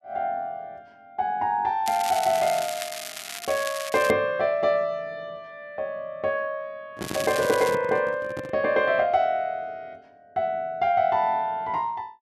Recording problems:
crackle; from 2 to 4 s and at 7 s; loose cable, SNR 10 dB
microphone handling noise; from 7 to 8.5 s; peak -4 dB vs average level

